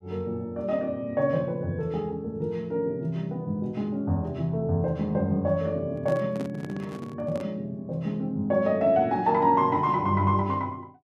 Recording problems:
microphone handling noise; from 6 to 7.5 s; peak -6 dB vs average level

